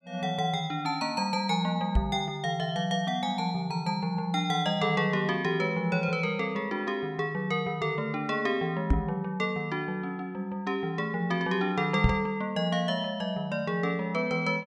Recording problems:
microphone bump; at 2 s, at 9 s and at 12 s; peak +8 dB vs average level

